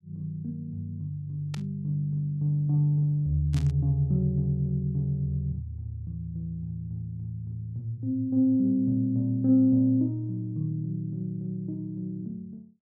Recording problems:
burst of static; at 1.5 s and at 3.5 s; peak -9 dB vs average level

